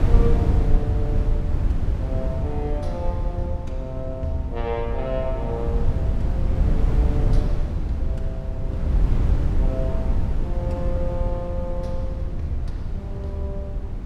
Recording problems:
wind noise; below 92 Hz, SNR -7 dB

